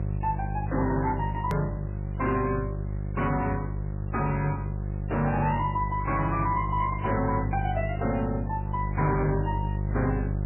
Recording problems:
codec artefacts; MP3, log-spectral distance 3 dB, nothing above 13.7 kHz
distortion; hard clipping, signal-to-distortion ratio 11 dB
hum; 50 Hz, harmonics up to 700 Hz, SNR 3 dB
hiss; SNR 28 dB
click at an edit; at 1.5 s

